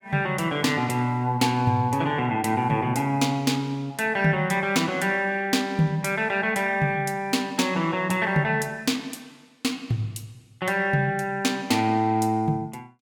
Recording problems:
none

